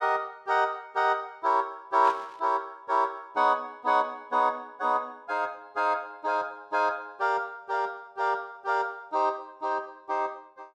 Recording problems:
static burst; at 2 s; peak -11 dB vs average level

